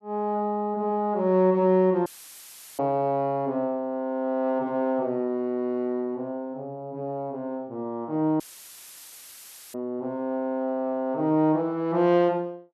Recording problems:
dropout; at 2 s for 0.5 s and at 8.5 s for 1.5 s; filled with static

